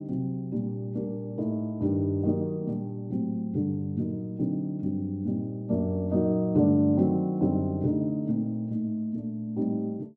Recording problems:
none

